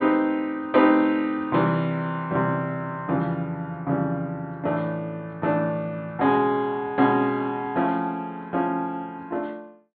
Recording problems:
low-pass filter; nothing above 4.5 kHz

